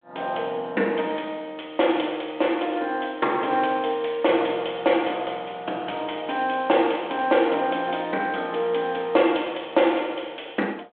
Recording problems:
telephone audio; 280 Hz to 3.4 kHz, G.726

